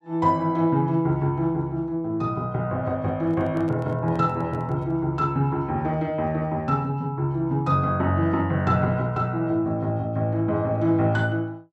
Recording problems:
microphone handling noise; from 3 to 5 s; peak -12 dB vs average level

